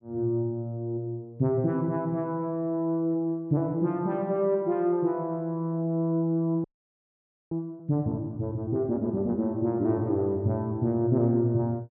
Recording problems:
audio freezing; at 6.5 s for 1 s

